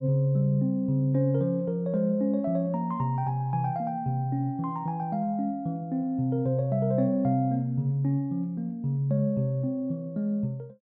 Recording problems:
none

